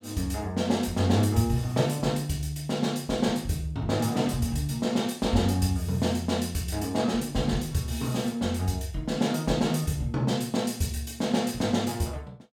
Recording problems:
none

